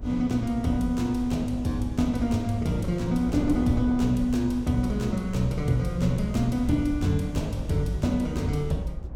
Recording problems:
low-frequency rumble; below 68 Hz, SNR 11 dB
wind on the microphone; below 420 Hz, SNR 17 dB

